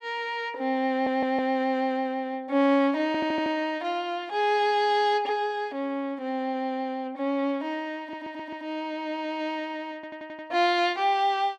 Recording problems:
audio stuttering; 4 times, first at 1 s

